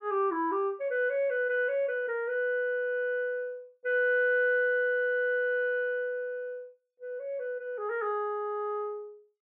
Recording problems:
treble cut off; nothing above 4 kHz

